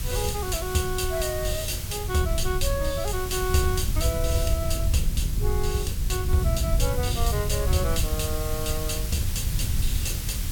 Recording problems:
background hiss; slope +1 dB per octave, SNR 7 dB
wind on the microphone; below 92 Hz, SNR 0 dB

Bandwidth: 17 kHz